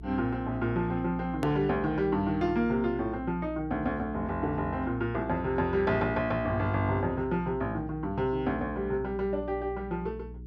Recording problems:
hum; 60 Hz, harmonics up to 420 Hz, SNR 14 dB
hard cut with a click; at 1.5 s

